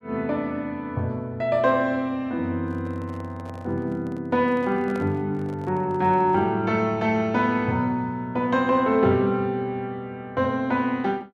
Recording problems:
microphone handling noise; from 2.5 to 6.5 s; peak -9 dB vs average level

